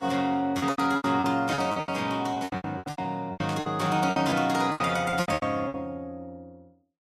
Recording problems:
lossy codec; Vorbis, log-spectral distance 2 dB, nothing above 13.5 kHz
packet loss; 20% of the sound replaced, filled with repeated pitch periods
static burst; at 1.5 s and at 3.5 s; peak -9 dB vs average level

